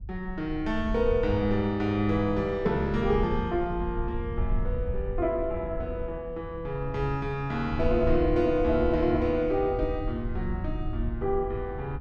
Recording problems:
rumble; below 82 Hz, SNR 8 dB

